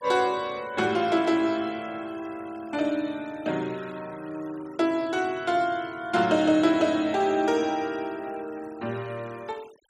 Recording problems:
noise reduction artefacts; signal-to-artefact ratio 24 dB

